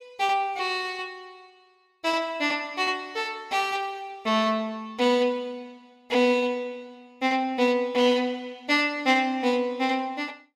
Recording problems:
none

